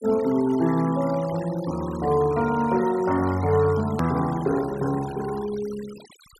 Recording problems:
noise reduction artefacts; signal-to-artefact ratio 18 dB
hard cut with a click; at 4 s

